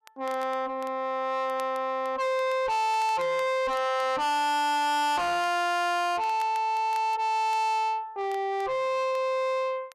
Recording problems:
distortion; soft clipping, signal-to-distortion ratio 6 dB
crackle; vinyl, SNR 26 dB

